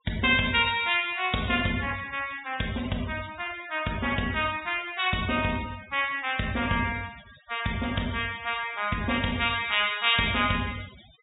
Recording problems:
treble cut off; nothing above 4 kHz
denoising artefacts; signal-to-artefact ratio 18 dB

